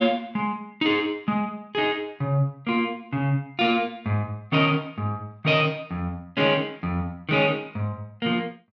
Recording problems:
none

